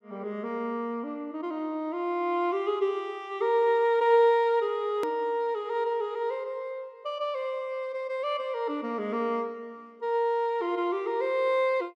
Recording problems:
click at an edit; at 5 s

